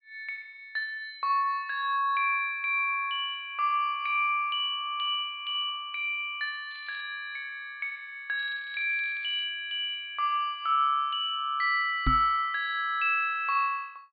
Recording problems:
treble missing; nothing above 4.6 kHz
crackling; at 6.5 s and from 8.5 to 9.5 s; loose cable, SNR 27 dB
knock on the microphone; at 12 s; peak +3 dB vs average level

